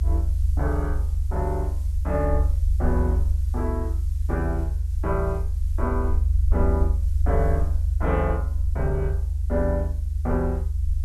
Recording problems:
background hiss; slope +1 dB per octave, SNR 25 dB
rumble; below 76 Hz, SNR -4 dB

